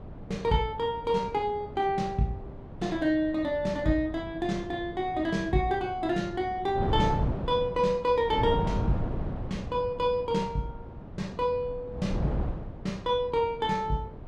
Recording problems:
wind on the microphone; below 290 Hz, SNR 8 dB

